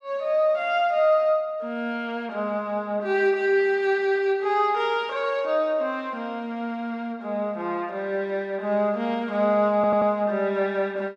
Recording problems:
stutter; at 10 s

